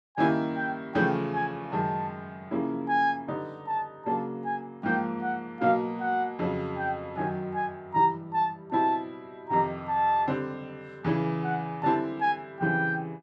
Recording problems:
none

